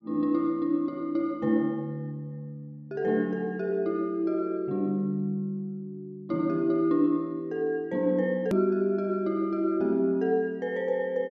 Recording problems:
edit click; at 8.5 s

